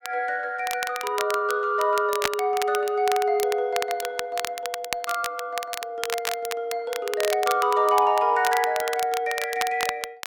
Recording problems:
crackling; vinyl, SNR 8 dB

